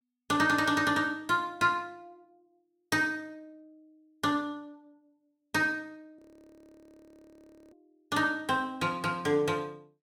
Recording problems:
audio freezing; at 6 s for 1.5 s

